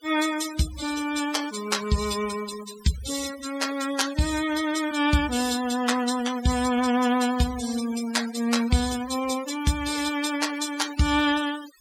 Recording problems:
denoising artefacts; signal-to-artefact ratio 11 dB

